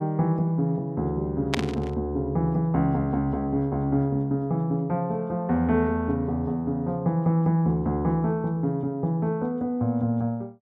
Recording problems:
static burst; at 1.5 s; peak +3 dB vs average level

